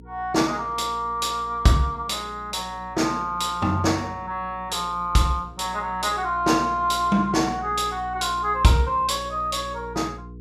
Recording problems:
electrical hum; 60 Hz, harmonics up to 480 Hz, SNR 19 dB

